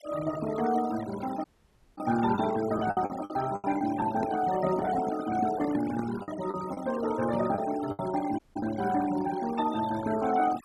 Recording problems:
noise reduction artefacts; signal-to-artefact ratio 13 dB
packet loss; 6% of the sound replaced, filled with the last packet
dropout; at 1.5 s for 0.5 s and at 8.5 s
handling noise; from 4 to 6 s; peak 0 dB vs average level

